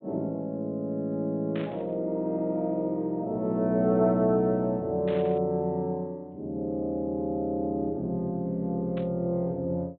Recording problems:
low-pass filter; nothing above 4 kHz
static burst; at 1.5 s, at 5 s and at 9 s; peak -10 dB vs average level

